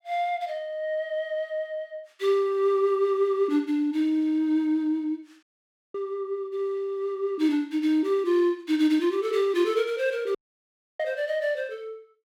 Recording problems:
dropout; at 5.5 s for 0.5 s and at 10 s for 0.5 s

